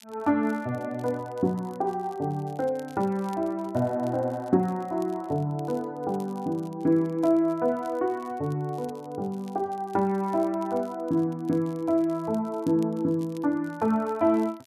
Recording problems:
crackle; vinyl, SNR 28 dB

